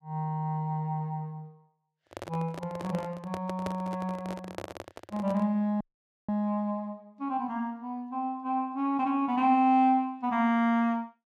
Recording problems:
handling noise; from 2 to 5.5 s; peak -3 dB vs average level
audio cutting out; at 6 s

